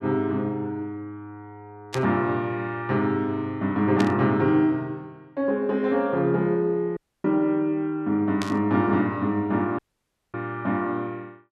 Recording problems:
static burst; 4 times, first at 2 s; peak -3 dB vs average level
audio cutting out; at 7 s and at 10 s for 0.5 s

